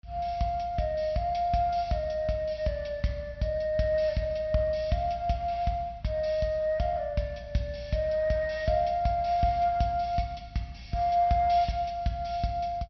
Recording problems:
treble missing; nothing above 5.8 kHz

